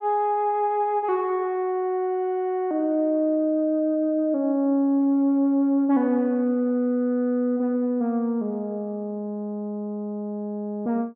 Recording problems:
none

